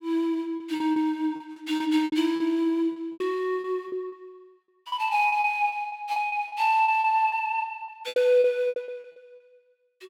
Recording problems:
lost packets; 16% of the sound replaced, filled with repeated pitch periods

